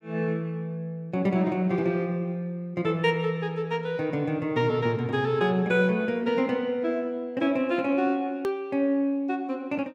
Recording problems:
edit click; at 8.5 s

